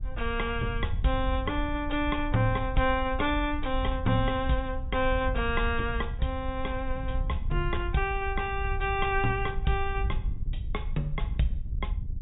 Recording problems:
treble missing; nothing above 4 kHz
wind noise; below 68 Hz, SNR 5 dB

